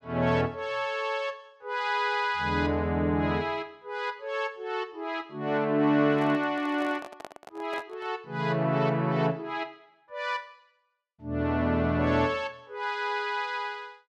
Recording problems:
microphone handling noise; from 6 to 8 s; peak -8 dB vs average level

